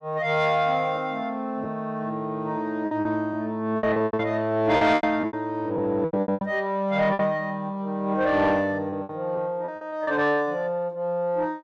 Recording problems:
distorted audio; soft clipping, signal-to-distortion ratio 12 dB
lost packets; 9% of the sound replaced, filled with repeated pitch periods

